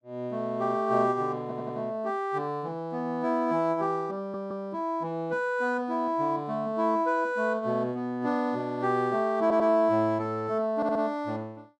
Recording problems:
stutter; 4 times, first at 1.5 s

